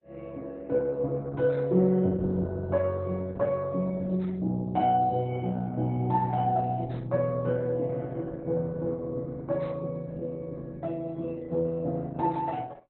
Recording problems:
lossy compression; Opus, log-spectral distance 2 dB, nothing above 4.1 kHz

